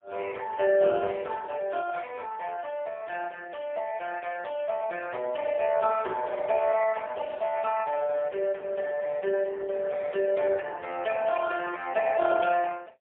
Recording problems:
telephone audio; 280 Hz to 3.4 kHz, AMR-NB, then MP3

